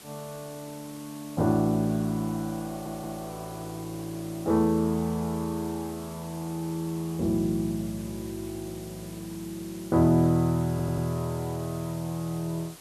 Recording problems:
hiss; slope -2 dB per octave, SNR 17 dB
stutter; at 2.5 s and at 11 s

